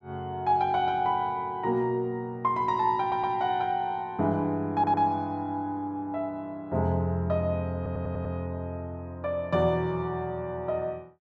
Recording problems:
stutter; at 3 s, at 4.5 s and at 8 s

